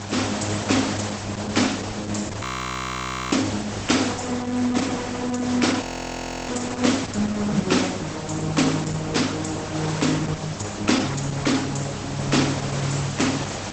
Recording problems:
codec artefacts; Opus, log-spectral distance 12 dB, nothing above 8 kHz
hum; 50 Hz, harmonics up to 500 Hz, SNR 12 dB
background hiss; slope -4 dB per octave, SNR 8 dB
frozen audio; at 2.5 s for 1 s and at 6 s for 0.5 s

